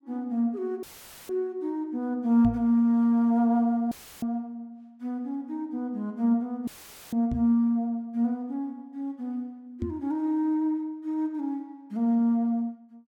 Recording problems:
dropout; at 1 s, at 4 s and at 6.5 s; filled with static
microphone thump; at 2.5 s, at 7.5 s and at 10 s; peak -1 dB vs average level

